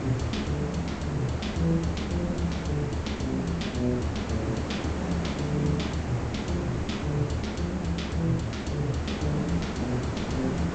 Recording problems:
treble cut off; nothing above 8 kHz
background hiss; slope -7 dB per octave, SNR 4 dB
wind noise; below 120 Hz, SNR 20 dB

